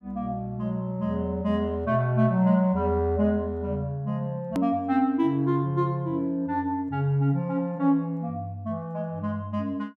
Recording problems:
click at an edit; at 4.5 s

